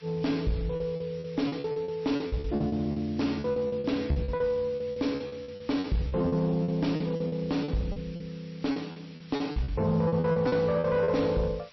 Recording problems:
lossy codec; MP3, log-spectral distance 4 dB, nothing above 5.7 kHz
distorted audio; soft clipping, signal-to-distortion ratio 11 dB
background hiss; SNR 24 dB
lost packets; 17% of the sound replaced, filled with repeated pitch periods

